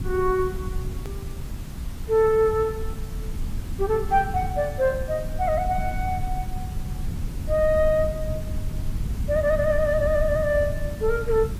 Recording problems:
codec artefacts; AAC, log-spectral distance 2 dB
hiss; slope -4 dB per octave, SNR 20 dB
rumble; below 100 Hz, SNR 8 dB
click at an edit; at 1 s

